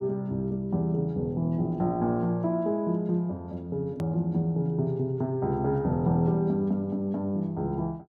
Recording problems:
edit click; at 4 s

